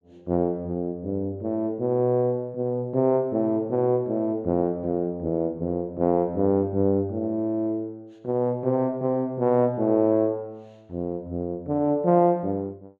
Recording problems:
none

